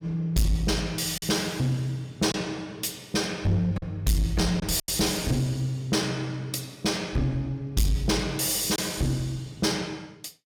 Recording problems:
distorted audio; soft clipping, signal-to-distortion ratio 7 dB
packet loss; 2% of the sound replaced, filled with silence

